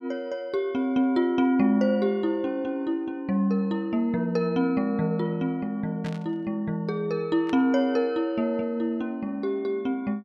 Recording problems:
static burst; at 6 s and at 7.5 s; peak -12 dB vs average level

